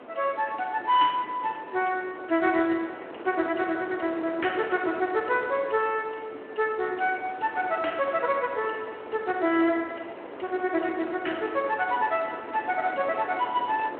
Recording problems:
telephone audio; 260 Hz to 3.3 kHz, Speex
wind on the microphone; below 1 kHz, SNR 13 dB

